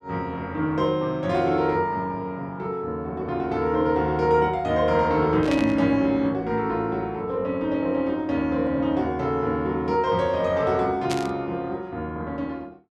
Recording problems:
static burst; at 5.5 s and at 11 s; peak -2 dB vs average level

